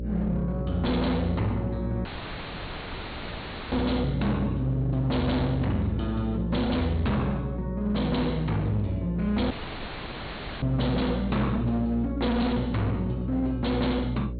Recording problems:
treble cut off; nothing above 4.4 kHz
distortion; hard clipping, uneven, signal-to-distortion ratio 6 dB
hum; 60 Hz, harmonics up to 600 Hz, SNR 7 dB
dropout; at 2 s for 1.5 s and at 9.5 s for 1 s

